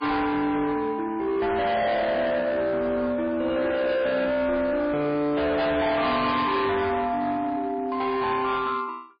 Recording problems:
lossy codec; MP3, log-spectral distance 2 dB, nothing above 4.8 kHz
distortion; hard clipping, uneven, signal-to-distortion ratio 7 dB

